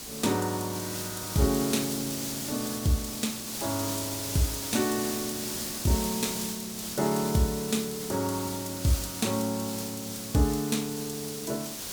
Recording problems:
hiss; SNR 4 dB

